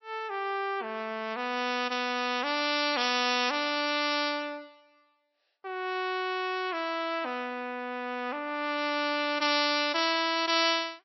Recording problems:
codec artefacts; MP3, log-spectral distance 4 dB, nothing above 5.7 kHz

